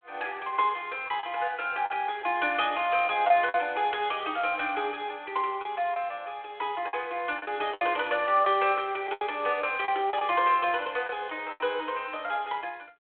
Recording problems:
telephone audio; 300 Hz to 3.4 kHz, G.726
lost packets; 5% of the sound replaced, filled with the last packet

